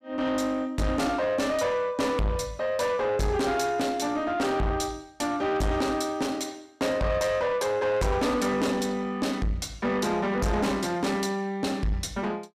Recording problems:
distortion; soft clipping, signal-to-distortion ratio 8 dB

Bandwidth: 15.5 kHz